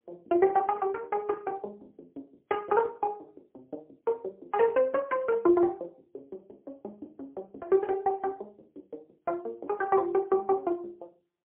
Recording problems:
phone line; 280 Hz to 2.9 kHz, AMR-NB, then MP3

